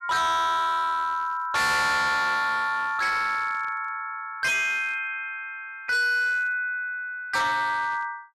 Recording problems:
distortion; hard clipping, uneven, signal-to-distortion ratio 6 dB

